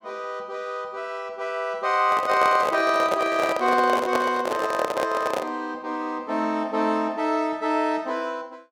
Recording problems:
handling noise; from 2 to 5.5 s; peak +4 dB vs average level

